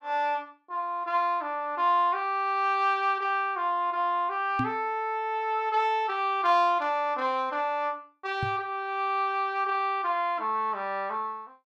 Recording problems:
knock on the microphone; at 4.5 s and at 8.5 s; peak 0 dB vs average level

